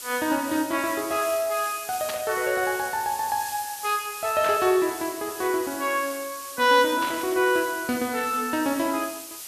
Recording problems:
background hiss; slope +2 dB per octave, SNR 11 dB
burst of static; at 2 s, at 4.5 s and at 7 s; peak -4 dB vs average level

